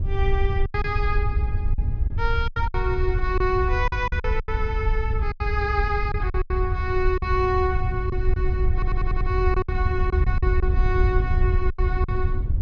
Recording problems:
low-pass filter; nothing above 6.8 kHz
wind noise; below 78 Hz, SNR -2 dB
lost packets; 9% of the sound replaced, filled with silence
audio stuttering; at 8.5 s

